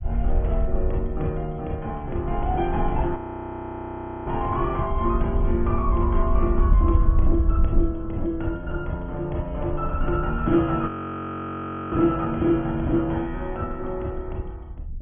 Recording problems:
low-pass filter; nothing above 3.3 kHz
lossy compression; Opus, log-spectral distance 2 dB
rumble; below 62 Hz, SNR 2 dB
frozen audio; at 3 s for 1 s and at 11 s for 1 s

